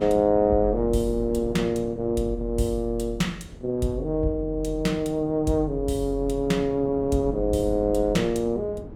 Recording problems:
wind on the microphone; below 340 Hz, SNR 15 dB

